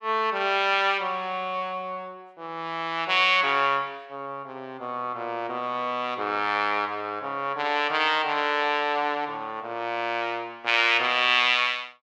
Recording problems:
none

